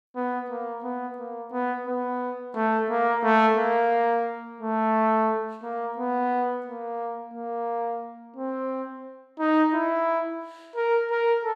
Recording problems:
none

